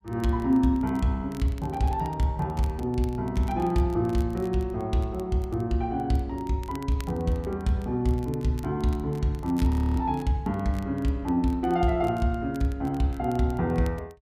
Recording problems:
crackle; vinyl, SNR 26 dB
frozen audio; at 9.5 s

